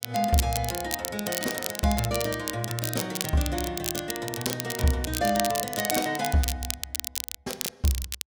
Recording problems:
crackle; vinyl, SNR 4 dB

